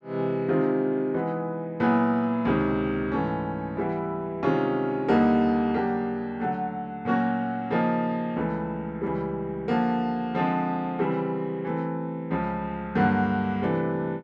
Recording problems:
none

